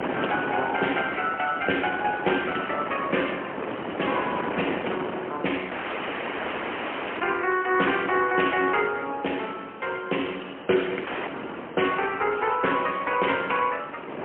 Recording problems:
telephone audio; 220 Hz to 3.2 kHz, AMR-NB, then MP3
hiss; SNR 27 dB
wind noise; below 1.3 kHz, SNR 9 dB
dropout; at 5.5 s for 1.5 s and at 11 s

